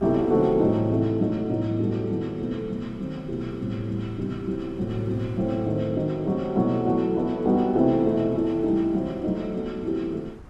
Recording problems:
wind noise; below 290 Hz, SNR 21 dB

